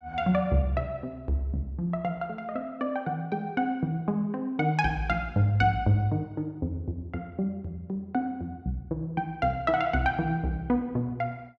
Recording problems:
none

